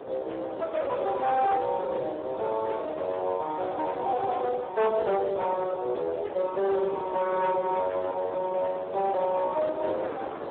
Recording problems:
phone line; 320 Hz to 3.9 kHz, Speex
distortion; hard clipping, signal-to-distortion ratio 13 dB
wind on the microphone; below 840 Hz, SNR 13 dB

